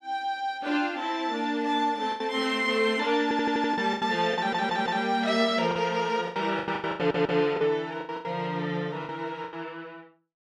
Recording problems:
packet loss; 10% of the sound replaced, filled with the last packet
stutter; at 3 s, at 4.5 s and at 7 s

